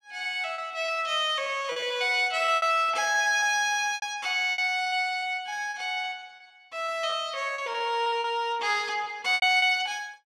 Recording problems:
packet loss; 12% of the sound replaced, filled with repeated pitch periods

